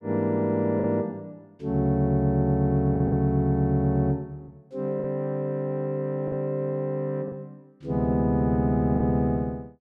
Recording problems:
lost packets; 4% of the sound replaced, filled with the last packet

